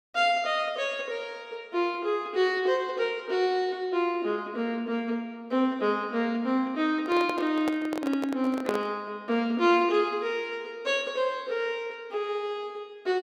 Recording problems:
handling noise; from 7 to 9 s; peak +1 dB vs average level

